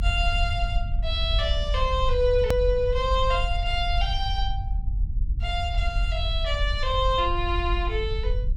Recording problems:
low-frequency rumble; below 64 Hz, strongest tone 44 Hz, SNR 2 dB
click at an edit; at 2.5 s

